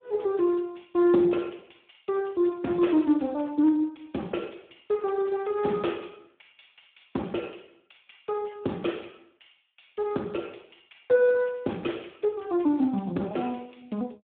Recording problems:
phone line; 150 Hz to 3.4 kHz, Speex

